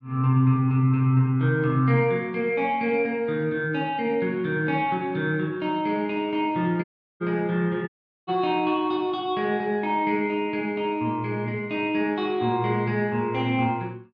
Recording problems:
audio cutting out; at 7 s and at 8 s

